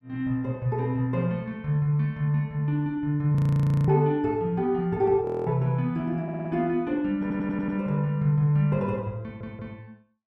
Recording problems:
audio freezing; at 3.5 s for 0.5 s and at 5.5 s
stutter; at 6 s, at 7 s and at 9 s

